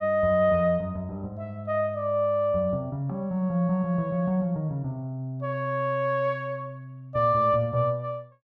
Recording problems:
none

